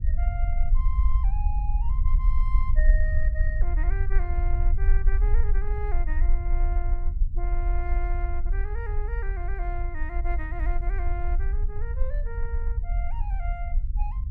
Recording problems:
rumble; below 50 Hz, SNR -12 dB

